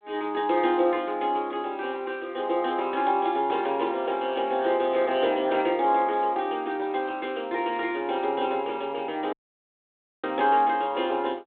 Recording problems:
phone line; 280 Hz to 3.6 kHz, G.726
audio cutting out; at 9.5 s for 1 s

